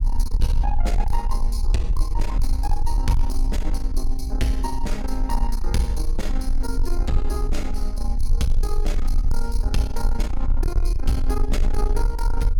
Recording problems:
distortion; soft clipping, signal-to-distortion ratio 10 dB
rumble; below 40 Hz, strongest tone 20 Hz, SNR -3 dB

